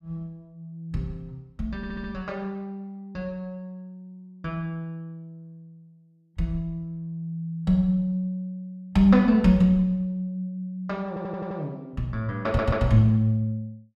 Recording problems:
audio stuttering; at 2 s, at 11 s and at 12 s

